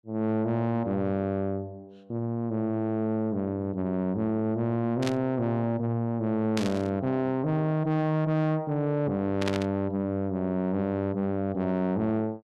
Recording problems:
distortion; soft clipping, signal-to-distortion ratio 11 dB
static burst; at 5 s, at 6.5 s and at 9.5 s; peak -1 dB vs average level

